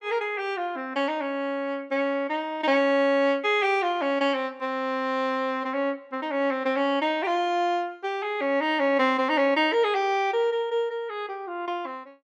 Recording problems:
none

